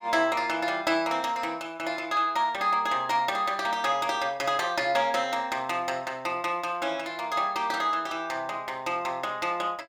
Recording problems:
none

